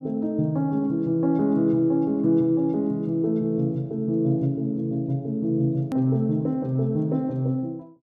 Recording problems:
edit click; at 6 s

